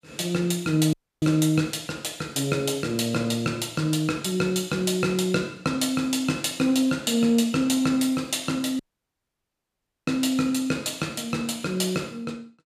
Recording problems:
dropout; at 1 s and at 9 s for 1.5 s

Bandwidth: 15 kHz